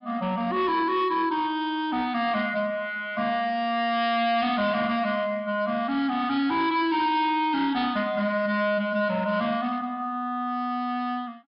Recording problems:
treble cut off; nothing above 5.5 kHz
distorted audio; hard clipping, signal-to-distortion ratio 11 dB

